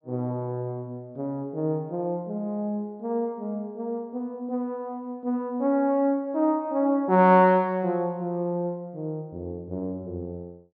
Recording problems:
low-pass filter; nothing above 5.5 kHz

